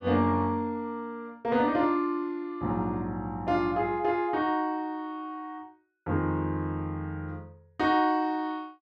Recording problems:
none

